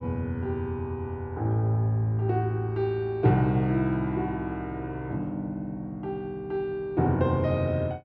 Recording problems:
none

